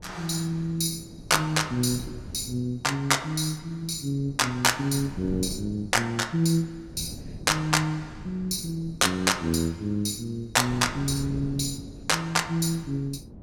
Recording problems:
wind noise; below 240 Hz, SNR 16 dB

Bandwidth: 17.5 kHz